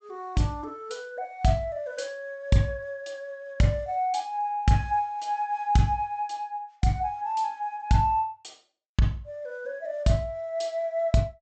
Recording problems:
treble missing; nothing above 8 kHz

